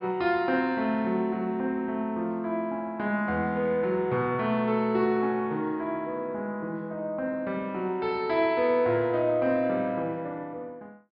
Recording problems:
treble cut off; nothing above 5.5 kHz

